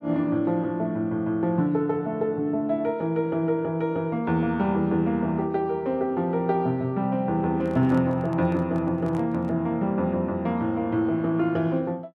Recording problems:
microphone handling noise; from 7.5 to 9.5 s; peak -10 dB vs average level

